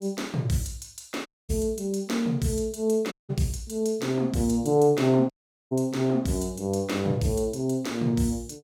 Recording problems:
audio cutting out; at 1.5 s, at 3 s and at 5.5 s

